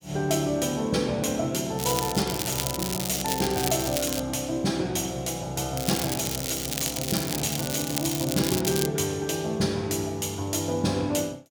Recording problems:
crackling; from 2 to 4 s and from 6 to 9 s; loose cable, SNR 3 dB

